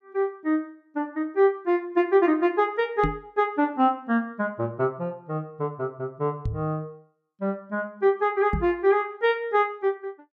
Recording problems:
microphone bump; at 3 s, at 6.5 s and at 8.5 s; peak +2 dB vs average level

